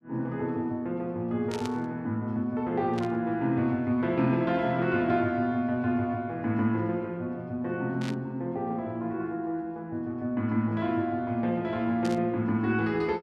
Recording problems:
static burst; 4 times, first at 1.5 s; peak -7 dB vs average level

